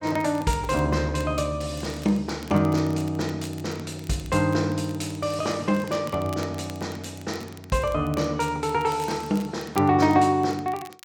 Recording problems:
crackling; vinyl, SNR 22 dB

